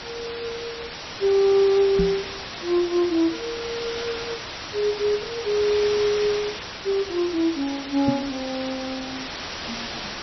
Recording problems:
lossy compression; MP3, log-spectral distance 18 dB, nothing above 5.7 kHz
background hiss; slope -1 dB per octave, SNR 8 dB
microphone bump; at 2 s and at 8 s; peak +4 dB vs average level

